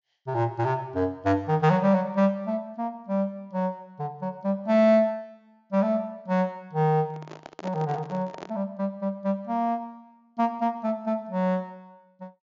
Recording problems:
treble cut off; nothing above 7.3 kHz
microphone handling noise; from 7 to 8.5 s; peak -8 dB vs average level

